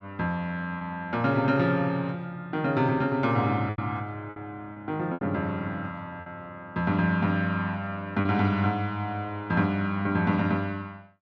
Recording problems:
packet loss; 4% of the sound replaced, filled with repeated pitch periods

